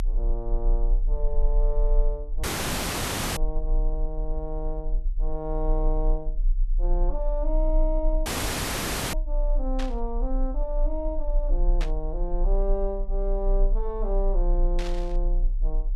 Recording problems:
low-frequency rumble; below 34 Hz, strongest tone 30 Hz, SNR -5 dB
audio cutting out; at 2.5 s for 1 s and at 8.5 s for 1 s
burst of static; at 10 s, at 12 s and at 15 s; peak 0 dB vs average level

